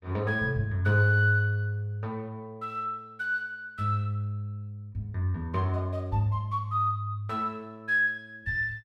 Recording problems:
none

